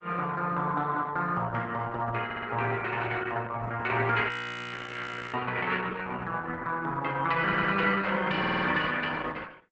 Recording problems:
lossy compression; Opus, log-spectral distance 4 dB, nothing above 8 kHz
stutter; at 2 s, at 7.5 s and at 8.5 s
frozen audio; at 4.5 s for 1 s

